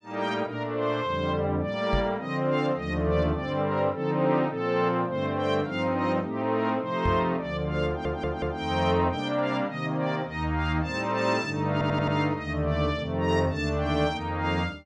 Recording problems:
knock on the microphone; at 2 s and at 7 s; peak +1 dB vs average level
audio stuttering; at 8 s and at 12 s

